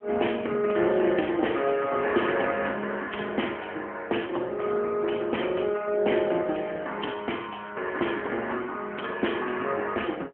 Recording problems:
phone line; 240 Hz to 3.2 kHz, AMR-NB

